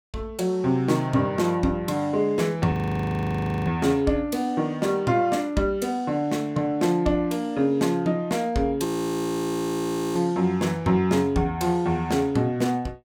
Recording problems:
audio freezing; at 2.5 s for 1 s and at 9 s for 1.5 s

